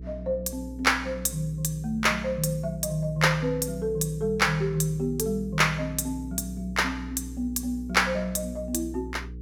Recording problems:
hum; 60 Hz, harmonics up to 480 Hz, SNR 13 dB

